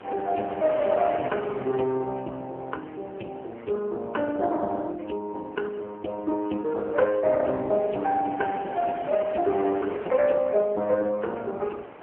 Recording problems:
telephone audio; 280 Hz to 2.9 kHz, AMR-NB
wind noise; below 1.4 kHz, SNR 15 dB

